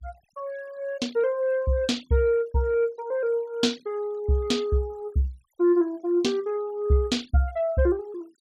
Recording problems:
noise reduction artefacts; signal-to-artefact ratio 27 dB

